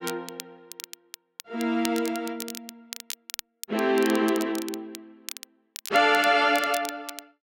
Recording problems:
crackle; vinyl, SNR 14 dB

